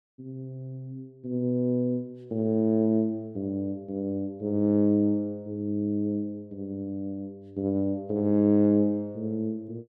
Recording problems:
none

